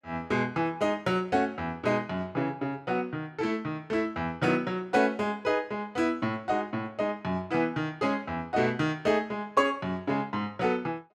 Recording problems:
none

